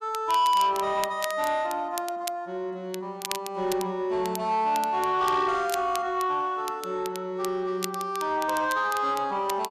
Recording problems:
distorted audio; soft clipping, signal-to-distortion ratio 11 dB
crackle; vinyl, SNR 13 dB

